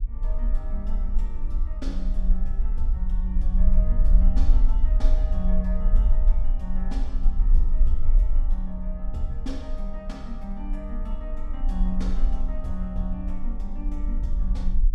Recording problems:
low-frequency rumble; below 40 Hz, strongest tone 22 Hz, SNR -10 dB

